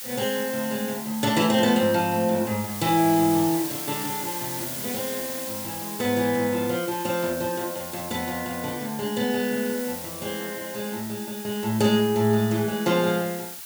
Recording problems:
background hiss; SNR 8 dB

